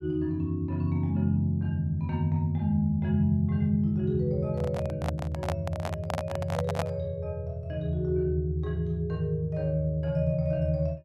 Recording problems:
handling noise; from 4.5 to 7 s; peak +1 dB vs average level

